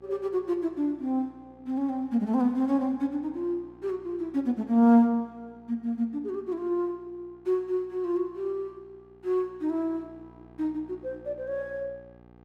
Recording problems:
hum; 60 Hz, harmonics up to 2 kHz, SNR 27 dB

